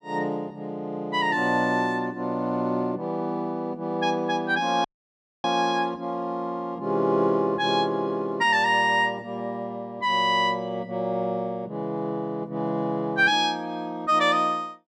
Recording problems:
audio cutting out; at 5 s for 0.5 s

